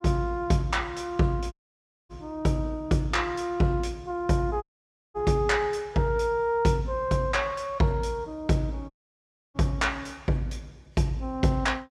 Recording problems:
audio cutting out; at 1.5 s for 0.5 s, at 4.5 s for 0.5 s and at 9 s for 0.5 s

